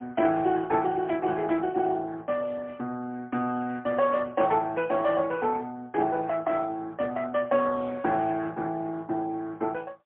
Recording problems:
telephone audio; 220 Hz to 3 kHz, AMR-NB, then MP3

